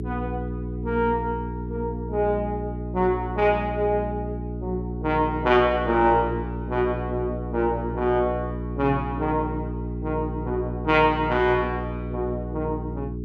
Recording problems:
hum; 60 Hz, harmonics up to 420 Hz, SNR 6 dB

